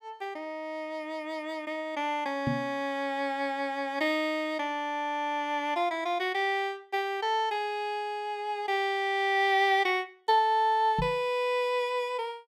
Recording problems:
microphone thump; at 2.5 s and at 11 s; peak +2 dB vs average level

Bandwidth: 16.5 kHz